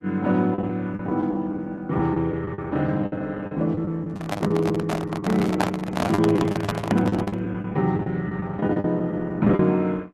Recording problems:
lossy codec; Opus, log-spectral distance 2 dB
lost packets; 15% of the sound replaced, filled with the last packet
microphone handling noise; from 4 to 7.5 s; peak +5 dB vs average level

